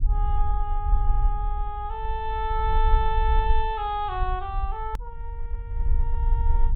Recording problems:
low-pass filter; nothing above 4 kHz
low-frequency rumble; below 54 Hz, SNR -1 dB
click at an edit; at 5 s

